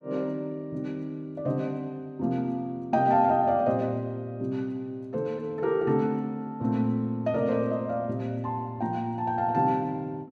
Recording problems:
none

